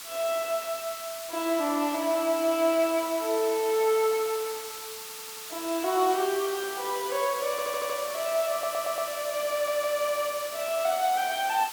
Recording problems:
hiss; SNR 10 dB
stutter; 4 times, first at 5 s

